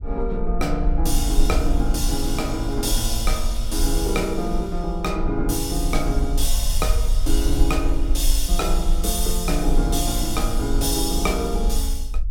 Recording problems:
rumble; below 46 Hz, strongest tone 22 Hz, SNR 2 dB

